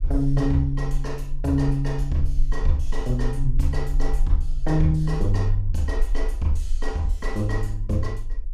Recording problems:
rumble; below 38 Hz, strongest tone 20 Hz, SNR 4 dB

